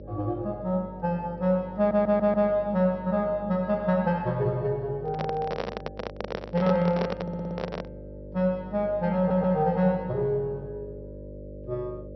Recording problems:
low-pass filter; nothing above 5.7 kHz
hum; 50 Hz, harmonics up to 600 Hz, SNR 16 dB
stutter; at 2 s, at 7 s and at 9 s
microphone handling noise; from 5 to 8 s; peak 0 dB vs average level

